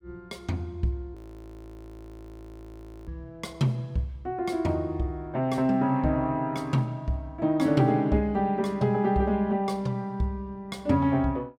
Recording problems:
audio freezing; at 1 s for 2 s

